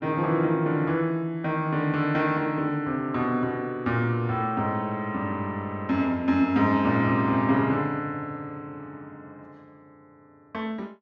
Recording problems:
none

